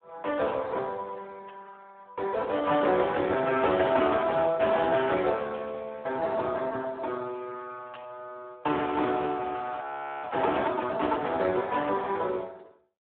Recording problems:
telephone audio; 300 Hz to 3.7 kHz, Speex
static burst; 5 times, first at 1.5 s; peak -12 dB vs average level
frozen audio; at 10 s

